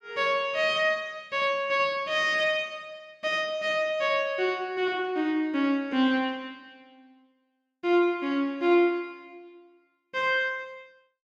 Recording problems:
none

